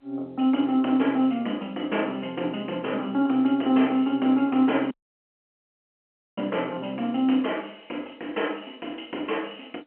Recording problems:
phone line; 220 Hz to 3.3 kHz, G.711
audio cutting out; at 5 s for 1.5 s

